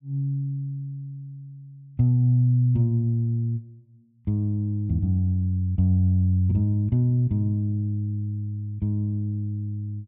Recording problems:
none

